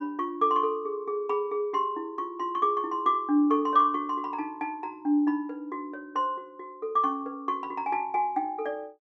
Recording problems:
none

